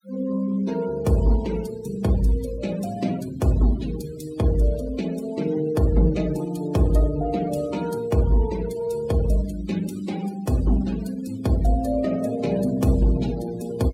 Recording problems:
noise reduction artefacts; signal-to-artefact ratio 17 dB

